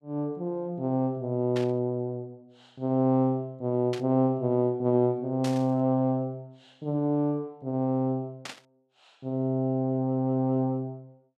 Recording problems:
static burst; 4 times, first at 1.5 s; peak -6 dB vs average level

